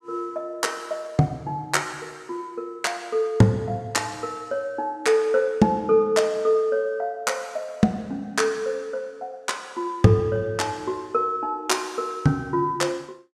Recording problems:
none

